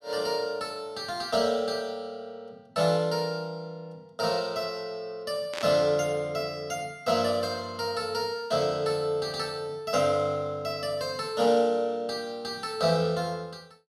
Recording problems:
burst of static; at 5.5 s; peak -3 dB vs average level

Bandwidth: 14.5 kHz